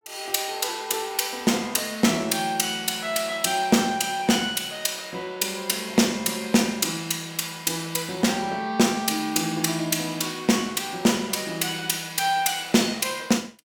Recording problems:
none

